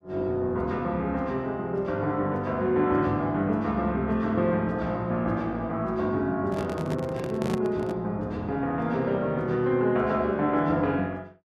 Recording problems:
microphone handling noise; from 6.5 to 8 s; peak 0 dB vs average level

